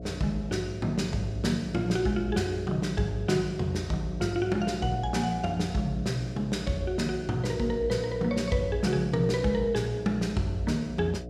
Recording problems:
electrical hum; 60 Hz, harmonics up to 720 Hz, SNR 12 dB

